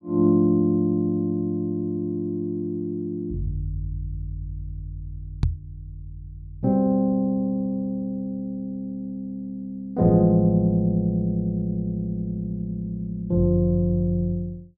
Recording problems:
knock on the microphone; at 5.5 s; peak +5 dB vs average level

